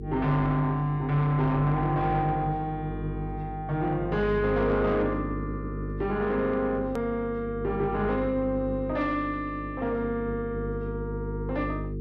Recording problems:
distortion; soft clipping, signal-to-distortion ratio 11 dB
hum; 50 Hz, harmonics up to 450 Hz, SNR 8 dB
hard cut with a click; at 7 s

